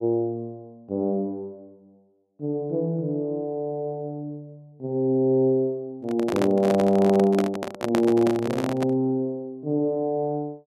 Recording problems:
handling noise; from 6 to 9 s; peak +2 dB vs average level

